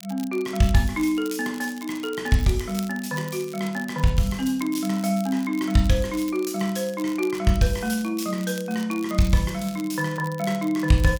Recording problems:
crackling; vinyl, SNR 18 dB

